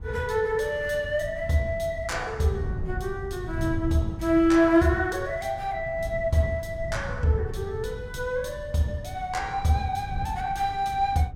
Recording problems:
wind on the microphone; below 130 Hz, SNR 11 dB

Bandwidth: 16.5 kHz